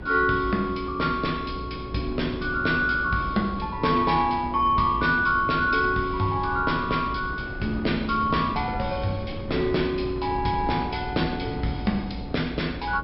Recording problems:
low-pass filter; nothing above 5.4 kHz
hum; 60 Hz, harmonics up to 600 Hz, SNR 16 dB
wind noise; below 300 Hz, SNR 12 dB

